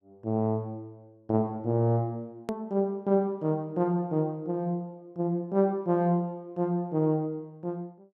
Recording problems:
click at an edit; at 2.5 s

